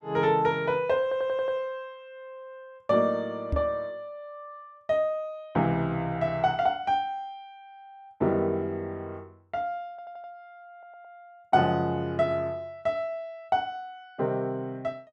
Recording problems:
audio stuttering; at 1 s, at 10 s and at 11 s
knock on the microphone; at 3.5 s; peak +2 dB vs average level

